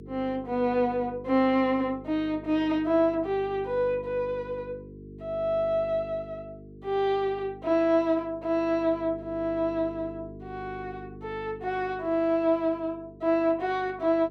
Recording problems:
hum; 50 Hz, harmonics up to 450 Hz, SNR 17 dB

